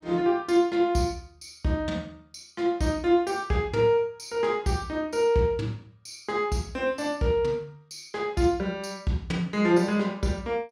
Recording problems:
none

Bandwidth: 16 kHz